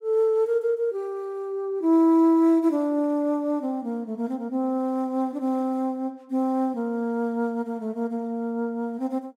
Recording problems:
none

